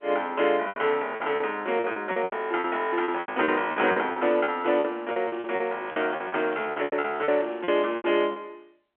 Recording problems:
telephone audio; 260 Hz to 3.4 kHz, G.711
packet loss; 16% of the sound replaced, filled with repeated pitch periods
crackling; from 2.5 to 4 s and from 5 to 8 s; loose cable, SNR 30 dB

